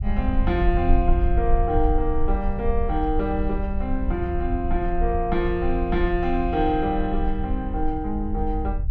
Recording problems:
low-frequency rumble; below 58 Hz, SNR 2 dB

